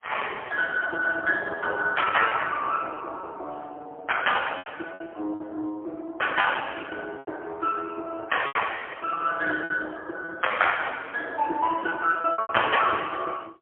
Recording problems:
telephone audio; 320 Hz to 3.3 kHz, AMR-NB, then MP3
lost packets; 6% of the sound replaced, filled with repeated pitch periods

